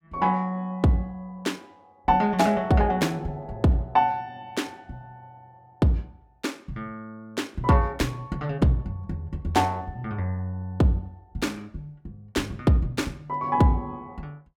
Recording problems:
none

